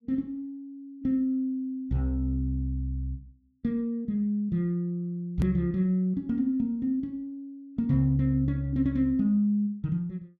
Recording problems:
click at an edit; at 5.5 s

